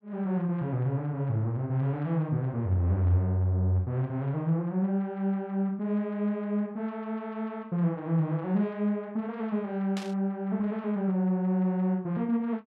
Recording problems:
burst of static; at 10 s; peak -7 dB vs average level

